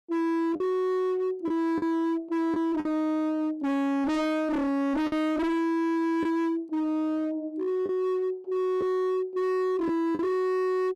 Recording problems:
distortion; hard clipping, signal-to-distortion ratio 6 dB
packet loss; 3% of the sound replaced, filled with the last packet

